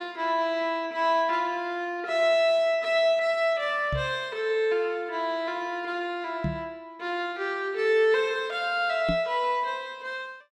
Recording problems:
microphone bump; at 4 s, at 6.5 s and at 9 s; peak 0 dB vs average level

